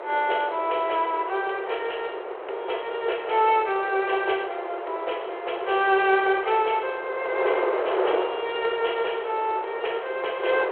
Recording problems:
telephone audio; 340 Hz to 3.3 kHz, G.726
wind on the microphone; below 900 Hz, SNR 6 dB

